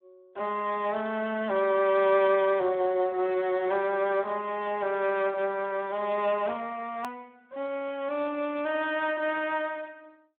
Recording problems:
telephone audio; 320 Hz to 3.4 kHz, Speex
edit click; at 7 s

